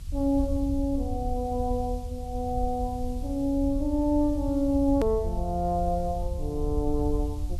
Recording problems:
background hiss; SNR 26 dB
rumble; below 78 Hz, SNR 6 dB
hard cut with a click; at 5 s

